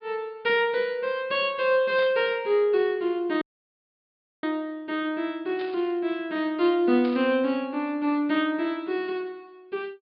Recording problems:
treble cut off; nothing above 4.9 kHz
static burst; at 2 s, at 5.5 s and at 7 s; peak -12 dB vs average level
audio cutting out; at 3.5 s for 1 s

